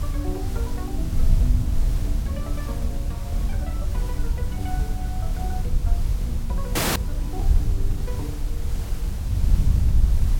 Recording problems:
background hiss; slope -4 dB per octave, SNR 4 dB
low-frequency rumble; below 62 Hz, strongest tone 40 Hz, SNR 4 dB
wind on the microphone; below 74 Hz, SNR -10 dB
frozen audio; at 7 s

